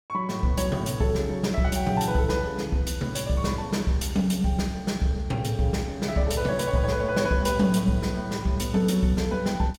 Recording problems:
none

